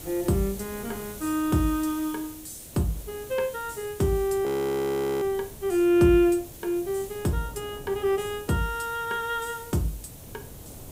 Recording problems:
background hiss; slope +3 dB per octave, SNR 17 dB
wind on the microphone; below 420 Hz, SNR 20 dB
audio freezing; at 4.5 s for 1 s

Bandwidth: 15.5 kHz